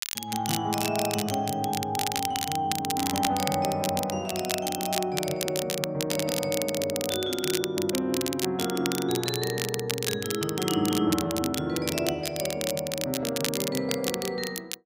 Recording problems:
crackling; vinyl, SNR 4 dB

